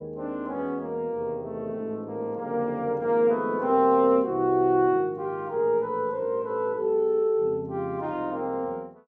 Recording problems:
none

